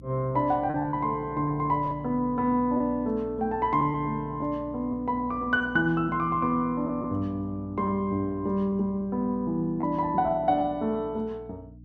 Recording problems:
mains hum; 60 Hz, harmonics up to 300 Hz, SNR 19 dB
lost packets; 3% of the sound replaced, filled with repeated pitch periods

